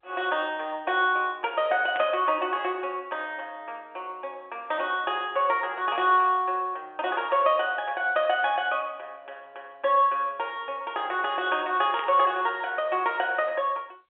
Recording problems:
telephone audio; 240 Hz to 3.4 kHz, G.711
static burst; at 2 s and at 12 s; peak -7 dB vs average level

